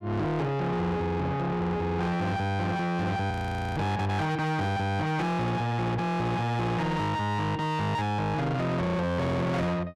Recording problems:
distorted audio; soft clipping, signal-to-distortion ratio 5 dB
frozen audio; at 3.5 s

